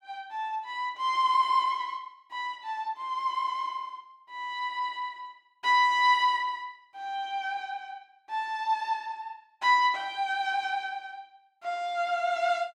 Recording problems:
none

